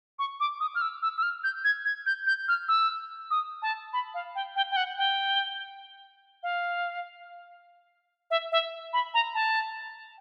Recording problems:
none

